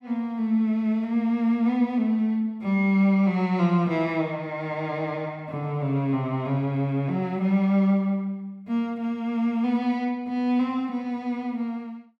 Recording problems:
none

